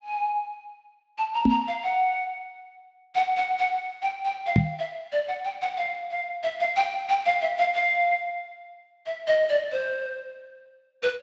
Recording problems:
codec artefacts; Speex, log-spectral distance 2 dB
microphone bump; at 1.5 s and at 4.5 s; peak +8 dB vs average level

